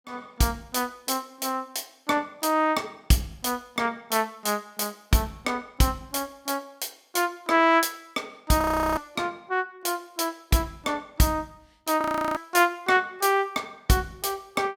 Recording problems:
audio freezing; at 8.5 s and at 12 s

